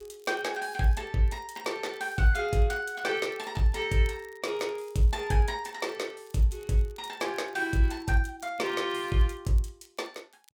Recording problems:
crackle; vinyl, SNR 30 dB

